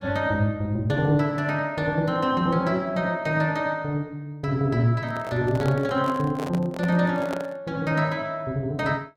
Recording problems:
microphone handling noise; from 5 to 7.5 s; peak -4 dB vs average level

